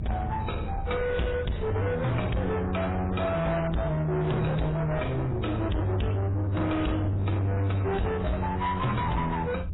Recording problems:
lossy codec; MP3, then AAC, log-spectral distance 3 dB, nothing above 3.9 kHz
distorted audio; soft clipping, signal-to-distortion ratio 7 dB
rumble; below 160 Hz, SNR 7 dB

